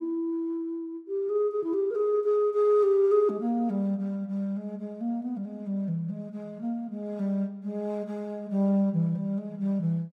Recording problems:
none

